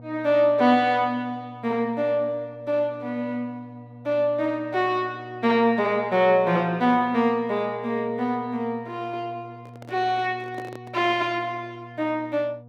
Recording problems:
hum; 60 Hz, harmonics up to 960 Hz, SNR 20 dB
handling noise; from 9.5 to 11 s; peak -10 dB vs average level

